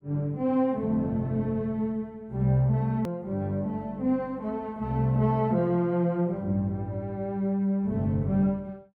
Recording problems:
edit click; at 3 s

